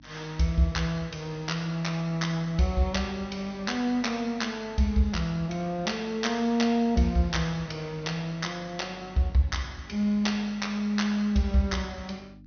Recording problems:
treble missing; nothing above 6.1 kHz
hum; 50 Hz, harmonics up to 300 Hz, SNR 24 dB

